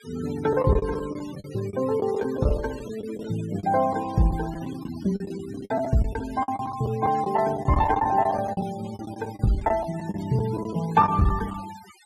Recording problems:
denoising artefacts; signal-to-artefact ratio 18 dB
lost packets; 12% of the sound replaced, filled with the last packet

